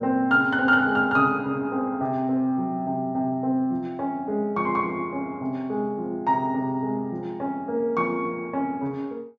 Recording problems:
treble missing; nothing above 8 kHz

